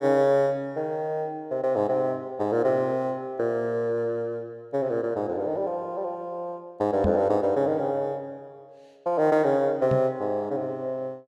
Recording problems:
microphone bump; at 7 s and at 10 s; peak +3 dB vs average level

